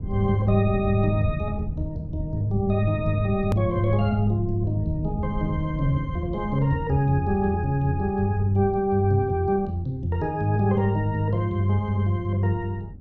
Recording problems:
low-frequency rumble; below 140 Hz, SNR 11 dB
hard cut with a click; at 3.5 s

